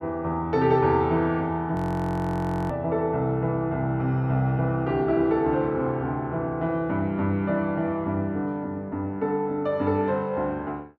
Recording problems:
audio freezing; at 2 s for 1 s

